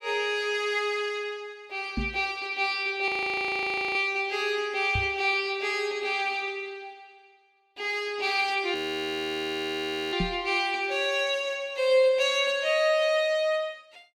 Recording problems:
knock on the microphone; at 2 s, at 5 s and at 10 s; peak 0 dB vs average level
frozen audio; at 3 s for 1 s and at 9 s for 1.5 s

